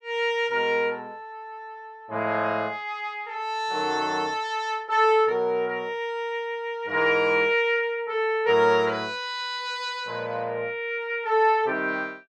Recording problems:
none

